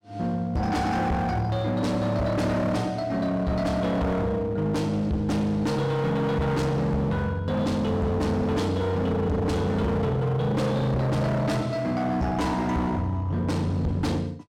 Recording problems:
distorted audio; hard clipping, uneven, signal-to-distortion ratio 6 dB

